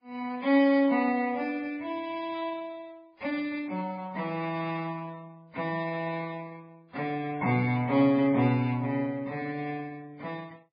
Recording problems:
lossy codec; Vorbis, then MP3, log-spectral distance 2 dB, nothing above 4.8 kHz

